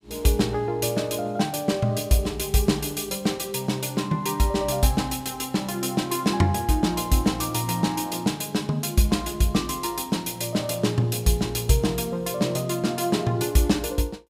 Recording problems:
none

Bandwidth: 15.5 kHz